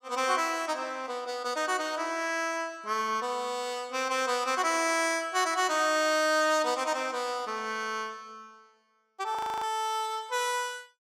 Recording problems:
audio freezing; at 9.5 s

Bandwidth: 16.5 kHz